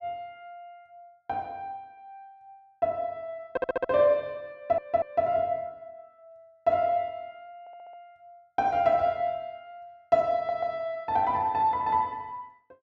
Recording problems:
audio stuttering; 4 times, first at 3.5 s

